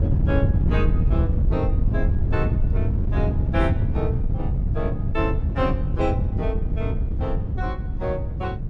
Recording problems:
wind noise; below 120 Hz, SNR -6 dB

